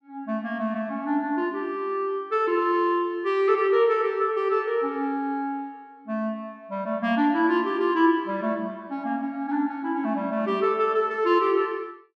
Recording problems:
none

